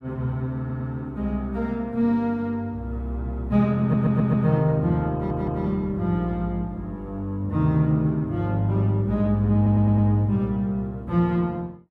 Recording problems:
stutter; 4 times, first at 0.5 s

